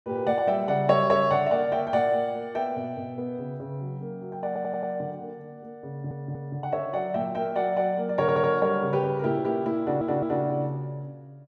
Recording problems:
stutter; 4 times, first at 4.5 s

